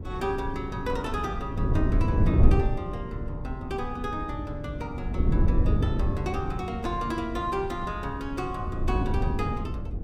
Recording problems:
wind on the microphone; below 130 Hz, SNR -3 dB

